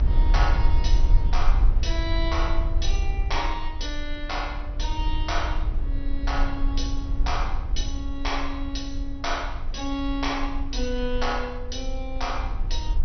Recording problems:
treble missing; nothing above 6 kHz
rumble; below 52 Hz, strongest tone 20 Hz, SNR -2 dB

